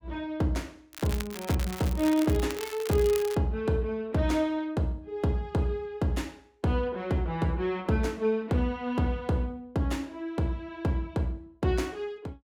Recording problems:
crackle; from 1 to 3.5 s; loose cable, SNR 11 dB

